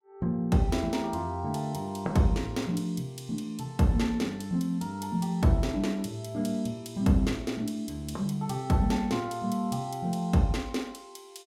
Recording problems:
none

